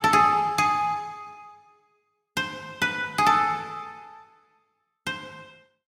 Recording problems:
none

